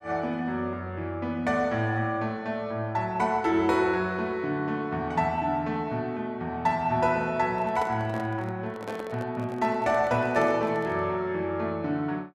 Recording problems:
microphone handling noise; from 7.5 to 11 s; peak -4 dB vs average level

